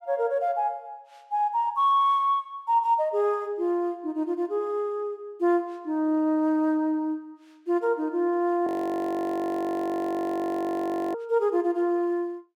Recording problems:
frozen audio; at 8.5 s for 2.5 s

